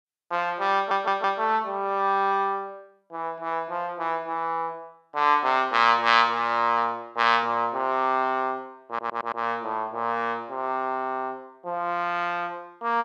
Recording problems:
stutter; at 1 s and at 9 s

